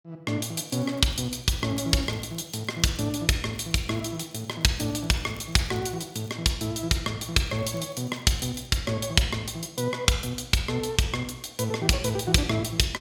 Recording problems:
crackle; from 0.5 to 3 s, from 3.5 to 6.5 s and from 7.5 to 8.5 s; loose cable, SNR 28 dB

